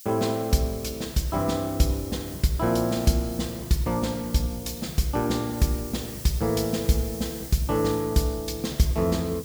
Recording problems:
background hiss; SNR 14 dB

